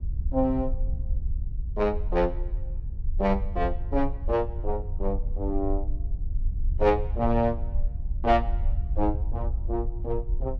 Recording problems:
low-frequency rumble; below 62 Hz, SNR 4 dB

